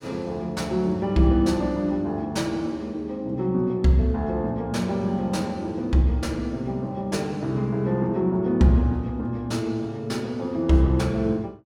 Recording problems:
none

